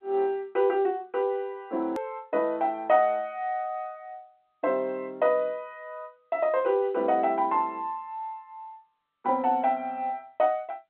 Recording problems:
telephone audio; 220 Hz to 3.8 kHz, G.711
edit click; at 2 s

